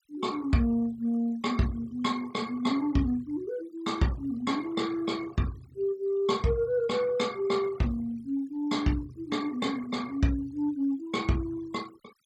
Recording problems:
noise reduction artefacts; signal-to-artefact ratio 23 dB

